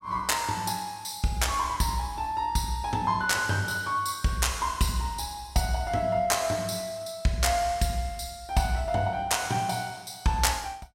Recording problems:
none

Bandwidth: 16 kHz